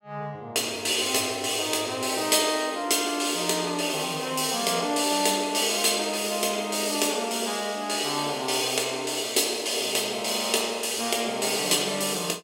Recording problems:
none

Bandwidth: 16 kHz